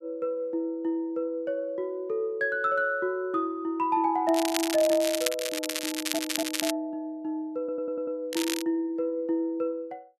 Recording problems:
crackle; from 4.5 to 6.5 s and at 8.5 s; loose cable, SNR 3 dB
stutter; at 6 s and at 7.5 s

